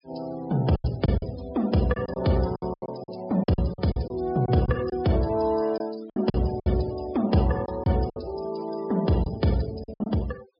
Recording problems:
treble missing; nothing above 5.5 kHz
noise reduction artefacts; signal-to-artefact ratio 19 dB
packet loss; 10% of the sound replaced, filled with silence

